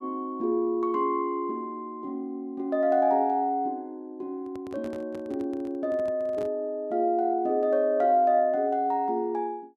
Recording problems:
handling noise; from 4.5 to 6.5 s; peak -12 dB vs average level

